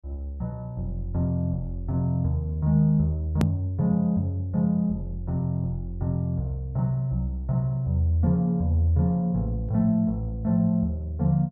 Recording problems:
edit click; at 3.5 s

